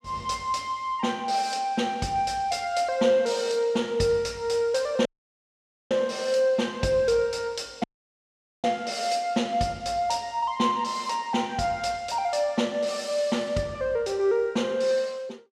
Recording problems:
dropout; at 5 s for 1 s and at 8 s for 1 s

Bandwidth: 14.5 kHz